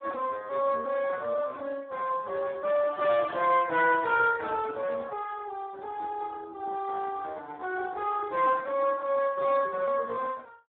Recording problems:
phone line; 340 Hz to 2.9 kHz, Speex

